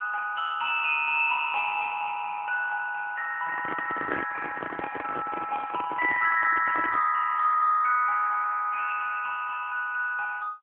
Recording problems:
telephone audio; 280 Hz to 2.4 kHz, AMR-NB
handling noise; from 3.5 to 7 s; peak -1 dB vs average level

